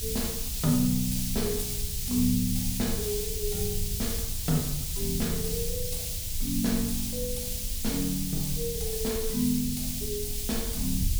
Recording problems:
hiss; SNR 1 dB
low-frequency rumble; below 56 Hz, strongest tone 20 Hz, SNR 11 dB
wind noise; below 78 Hz, SNR 10 dB

